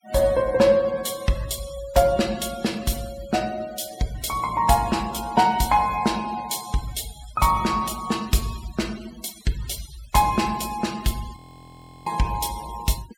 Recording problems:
denoising artefacts; signal-to-artefact ratio 18 dB
frozen audio; at 11 s for 0.5 s

